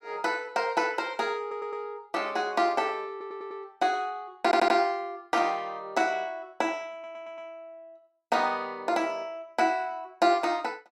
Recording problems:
stutter; 4 times, first at 1.5 s

